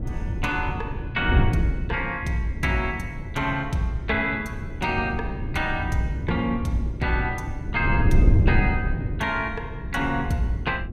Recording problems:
wind noise; below 140 Hz, SNR 2 dB

